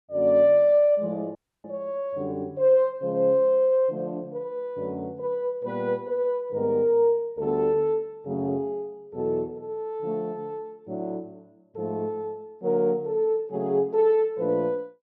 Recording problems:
audio cutting out; at 1.5 s

